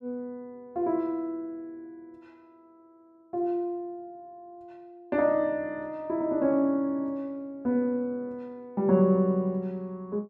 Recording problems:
none

